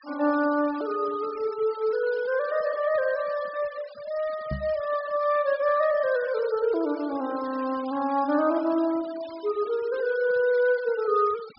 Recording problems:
low-pass filter; nothing above 5.3 kHz
noise reduction artefacts; signal-to-artefact ratio 21 dB
knock on the microphone; at 4.5 s; peak -2 dB vs average level

